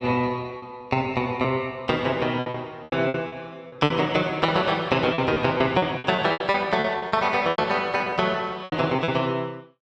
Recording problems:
packet loss; 13% of the sound replaced, filled with repeated pitch periods

